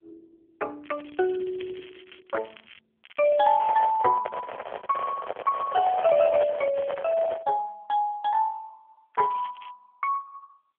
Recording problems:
phone line; 320 Hz to 3 kHz, AMR-NB
crackling; 4 times, first at 1 s; loose cable, SNR 24 dB
microphone handling noise; from 3.5 to 7.5 s; peak +1 dB vs average level

